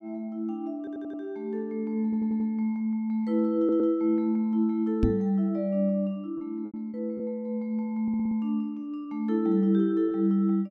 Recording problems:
packet loss; 2% of the sound replaced, filled with repeated pitch periods
audio stuttering; 4 times, first at 1 s
microphone bump; at 5 s; peak +7 dB vs average level

